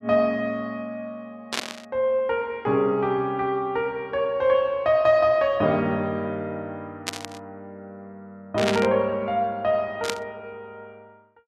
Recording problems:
burst of static; 4 times, first at 1.5 s; peak +3 dB vs average level

